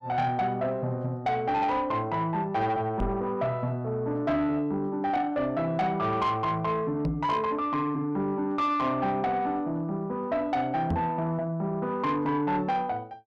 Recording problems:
distorted audio; soft clipping, signal-to-distortion ratio 12 dB
microphone thump; at 3 s, at 7 s and at 11 s; peak +3 dB vs average level

